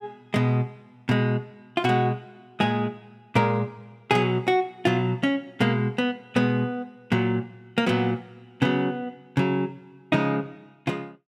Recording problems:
none

